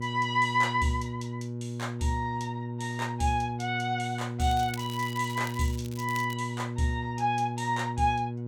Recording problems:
electrical hum; 60 Hz, harmonics up to 600 Hz, SNR 5 dB
crackling; from 4.5 to 6.5 s; loose cable, SNR 16 dB

